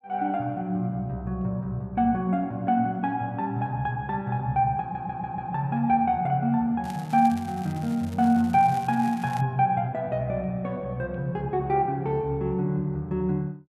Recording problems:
audio stuttering; at 5 s
crackle; from 7 to 9.5 s; loose cable, SNR 22 dB

